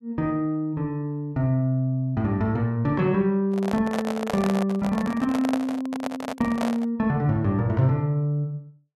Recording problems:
handling noise; from 3.5 to 7 s; peak 0 dB vs average level

